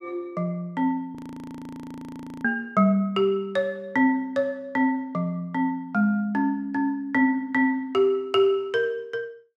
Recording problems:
frozen audio; at 1 s for 1.5 s

